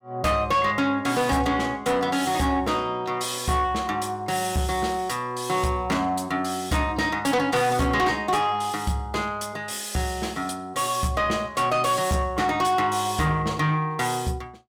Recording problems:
distortion; soft clipping, signal-to-distortion ratio 12 dB

